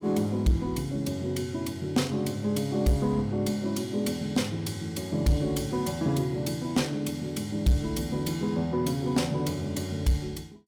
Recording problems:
distorted audio; soft clipping, signal-to-distortion ratio 12 dB

